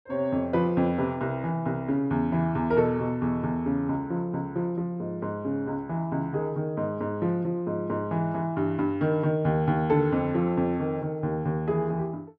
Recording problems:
none

